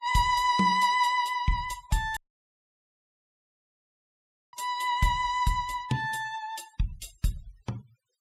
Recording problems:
denoising artefacts; signal-to-artefact ratio 24 dB
audio cutting out; at 2 s for 2.5 s

